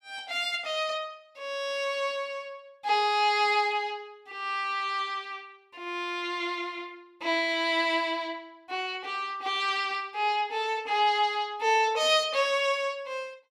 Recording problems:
none

